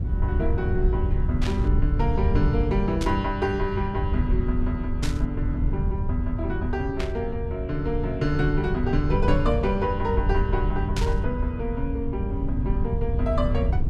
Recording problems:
low-frequency rumble; below 94 Hz, SNR 0 dB
static burst; 5 times, first at 1.5 s; peak 0 dB vs average level

